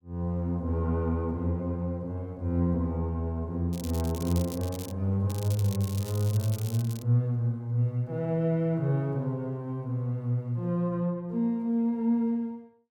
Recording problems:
crackling; from 3.5 to 5 s and from 5.5 to 7 s; loose cable, SNR 15 dB

